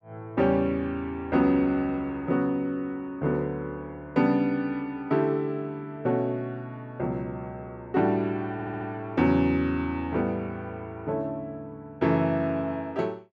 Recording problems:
stutter; at 8.5 s

